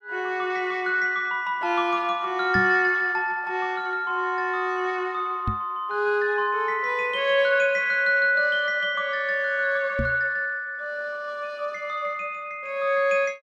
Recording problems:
knock on the microphone; at 2.5 s, at 5.5 s and at 10 s; peak -1 dB vs average level

